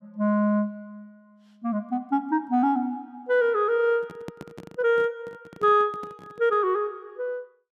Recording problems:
microphone handling noise; from 4 to 6.5 s; peak -8 dB vs average level

